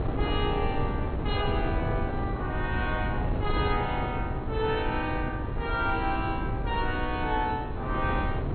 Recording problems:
low-pass filter; nothing above 4.2 kHz
wind on the microphone; below 260 Hz, SNR 1 dB

